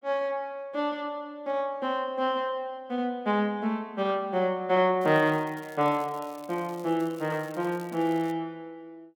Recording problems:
crackling; from 5 to 8.5 s; loose cable, SNR 24 dB

